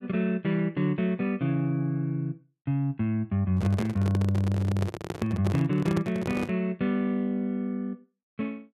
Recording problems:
microphone handling noise; from 3.5 to 6.5 s; peak +1 dB vs average level

